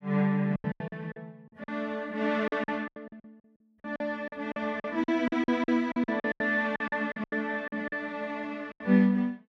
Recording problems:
packet loss; 16% of the sound replaced, filled with silence

